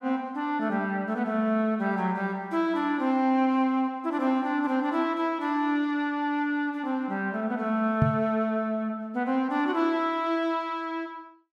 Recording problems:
knock on the microphone; at 8 s; peak +7 dB vs average level

